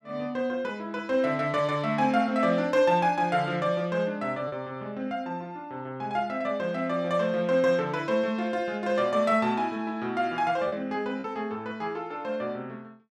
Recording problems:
lost packets; 0.9% of the sound replaced, filled with repeated pitch periods

